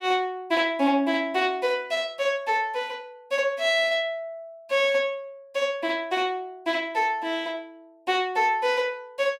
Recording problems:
none

